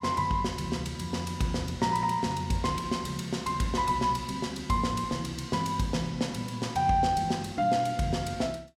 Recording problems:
none

